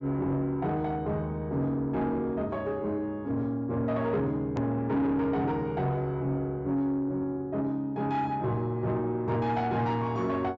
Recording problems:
treble missing; nothing above 8 kHz
distorted audio; soft clipping, signal-to-distortion ratio 12 dB
click at an edit; at 4.5 s

